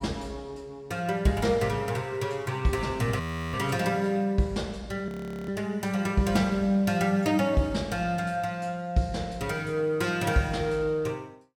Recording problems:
audio freezing; at 3 s and at 5 s

